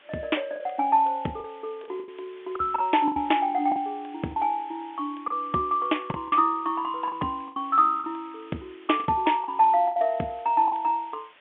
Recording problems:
telephone audio; 240 Hz to 3.4 kHz, G.711
hiss; SNR 27 dB
lost packets; 9% of the sound replaced, filled with the last packet

